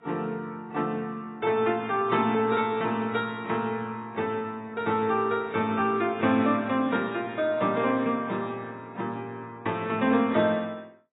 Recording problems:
lossy codec; AAC, log-spectral distance 2 dB, nothing above 3.3 kHz

